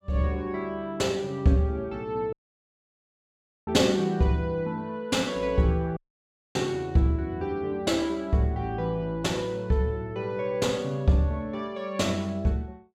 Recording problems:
audio cutting out; at 2.5 s for 1.5 s and at 6 s for 0.5 s

